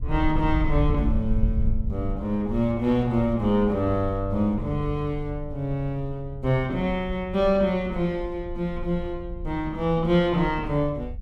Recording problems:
wind noise; below 68 Hz, SNR 8 dB

